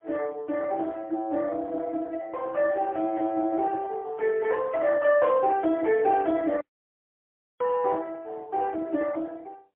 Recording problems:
phone line; 190 Hz to 3.3 kHz, AMR-NB, then MP3
audio cutting out; at 6.5 s for 1 s

